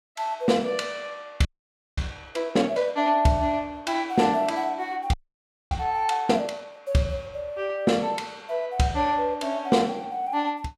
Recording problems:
frozen audio; at 1.5 s for 0.5 s and at 5 s for 0.5 s

